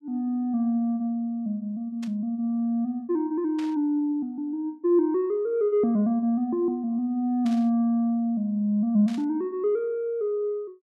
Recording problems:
static burst; 4 times, first at 2 s; peak -13 dB vs average level

